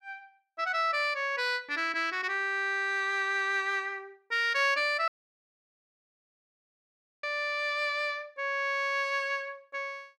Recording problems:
audio cutting out; at 5 s for 2 s

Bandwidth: 14.5 kHz